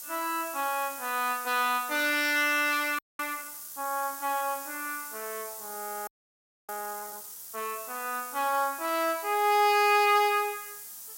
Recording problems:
hiss; SNR 11 dB
audio freezing; at 3 s and at 6 s for 0.5 s

